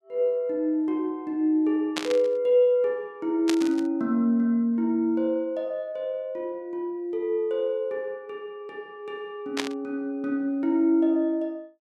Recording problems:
burst of static; at 2 s, at 3.5 s and at 9.5 s; peak +1 dB vs average level

